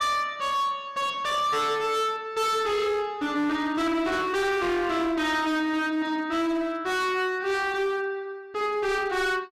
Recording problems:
distorted audio; hard clipping, signal-to-distortion ratio 8 dB

